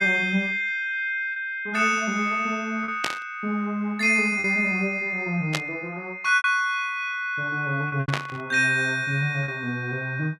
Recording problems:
packet loss; 3% of the sound replaced, filled with repeated pitch periods
burst of static; at 3 s, at 5.5 s and at 8 s; peak +2 dB vs average level

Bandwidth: 14 kHz